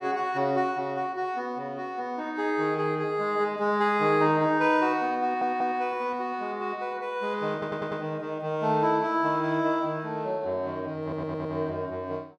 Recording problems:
stutter; at 5 s, at 7.5 s and at 11 s

